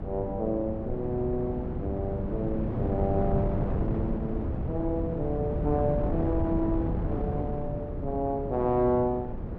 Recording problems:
wind on the microphone; below 270 Hz, SNR 2 dB

